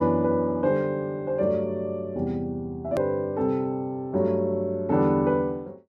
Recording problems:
click at an edit; at 3 s

